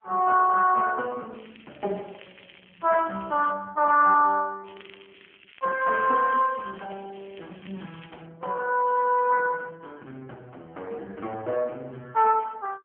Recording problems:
phone line; 240 Hz to 3.1 kHz, AMR-NB
crackle; from 1.5 to 3.5 s and from 4.5 to 8.5 s; loose cable, SNR 27 dB

